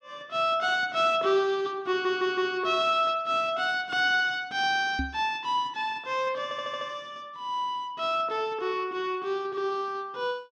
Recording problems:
audio stuttering; at 2 s and at 6.5 s
microphone thump; at 5 s; peak -1 dB vs average level

